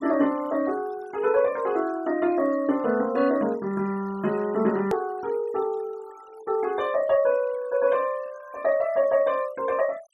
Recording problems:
noise reduction artefacts; signal-to-artefact ratio 22 dB
hard cut with a click; at 5 s

